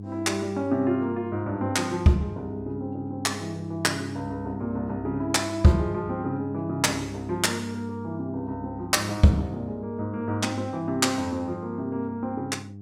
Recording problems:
hum; 50 Hz, harmonics up to 400 Hz, SNR 12 dB

